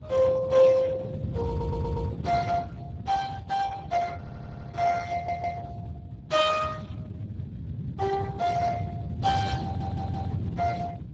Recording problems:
codec artefacts; Opus, then Speex, log-spectral distance 3 dB, nothing above 7.3 kHz
wind noise; below 170 Hz, SNR 7 dB
audio stuttering; 4 times, first at 1.5 s

